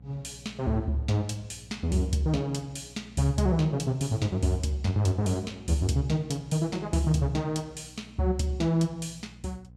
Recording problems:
electrical hum; 60 Hz, harmonics up to 540 Hz, SNR 23 dB

